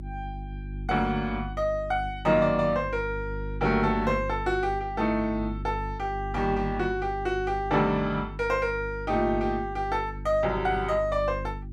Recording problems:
electrical hum; 50 Hz, harmonics up to 350 Hz, SNR 10 dB

